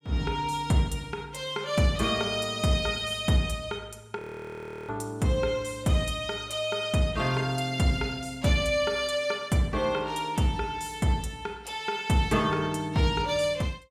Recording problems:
audio freezing; at 4 s for 0.5 s

